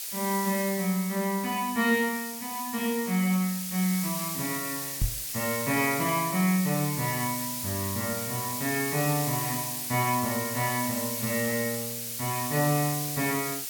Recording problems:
hiss; SNR 3 dB
microphone thump; at 5 s; peak +3 dB vs average level

